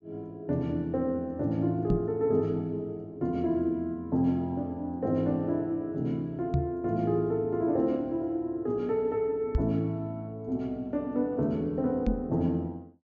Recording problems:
treble cut off; nothing above 8 kHz
microphone bump; 4 times, first at 2 s; peak +6 dB vs average level

